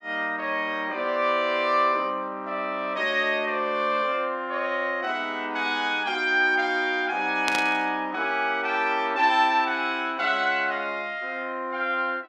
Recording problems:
static burst; at 7.5 s; peak +1 dB vs average level

